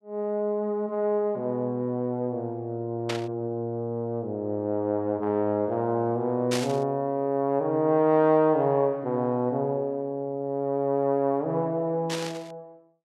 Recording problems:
static burst; at 3 s, at 6.5 s and at 12 s; peak -1 dB vs average level

